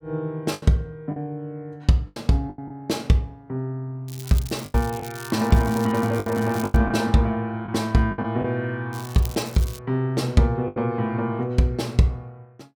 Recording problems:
lost packets; 6% of the sound replaced, filled with the last packet
crackling; from 4 to 7 s and at 9 s; loose cable, SNR 17 dB

